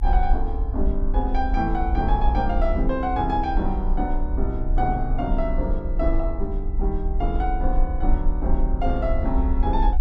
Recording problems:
low-frequency rumble; below 50 Hz, strongest tone 28 Hz, SNR 0 dB

